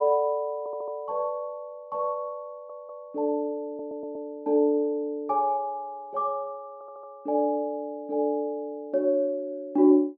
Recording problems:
stutter; 4 times, first at 0.5 s

